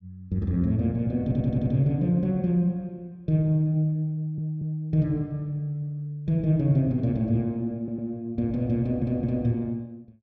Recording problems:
stutter; 4 times, first at 1 s

